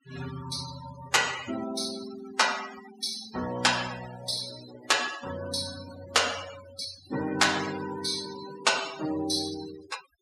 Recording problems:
noise reduction artefacts; signal-to-artefact ratio 12 dB

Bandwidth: 15.5 kHz